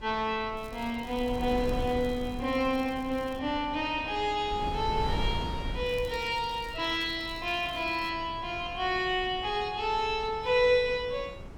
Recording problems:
wind on the microphone; below 230 Hz, SNR 11 dB
crackling; from 0.5 to 3.5 s and from 6 to 8 s; loose cable, SNR 25 dB

